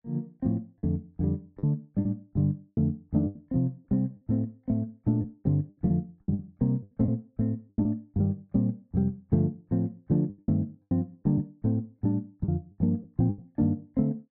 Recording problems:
lost packets; 8% of the sound replaced, filled with the last packet

